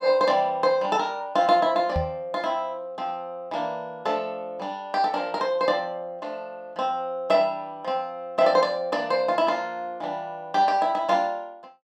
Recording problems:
microphone bump; at 2 s; peak 0 dB vs average level

